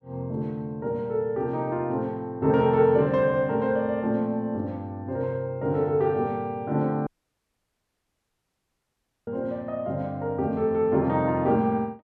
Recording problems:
audio cutting out; at 7 s for 2 s

